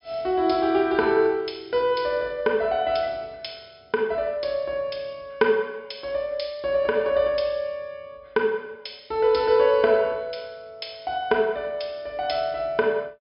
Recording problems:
treble cut off; nothing above 5.5 kHz

